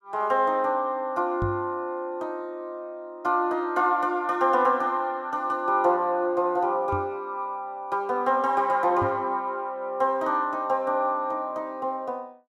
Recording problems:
knock on the microphone; at 1.5 s, at 7 s and at 9 s; peak -1 dB vs average level

